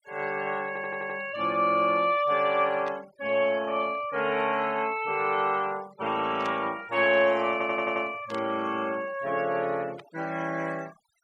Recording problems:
denoising artefacts; signal-to-artefact ratio 22 dB
stutter; at 0.5 s and at 7.5 s
static burst; 4 times, first at 3 s; peak -12 dB vs average level

